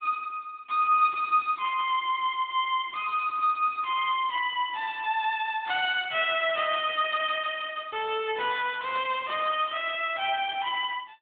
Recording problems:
phone line; 280 Hz to 3.6 kHz, AMR-NB

